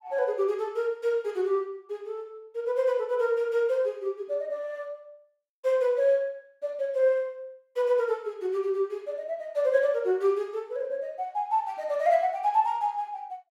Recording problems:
none

